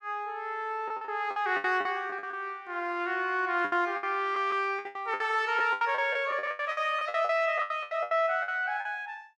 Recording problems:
packet loss; 16% of the sound replaced, filled with the last packet

